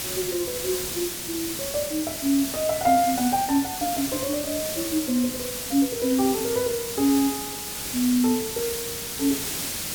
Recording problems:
hiss; SNR 4 dB

